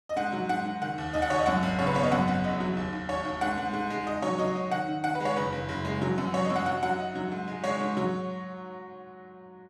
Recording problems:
none

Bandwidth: 12.5 kHz